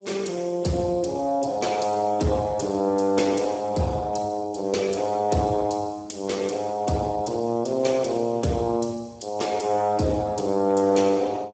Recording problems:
lossy compression; Speex, log-spectral distance 5 dB, nothing above 7.8 kHz

